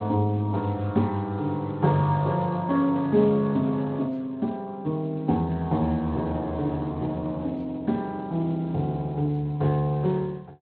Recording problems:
codec artefacts; Speex, log-spectral distance 2 dB, nothing above 4.1 kHz

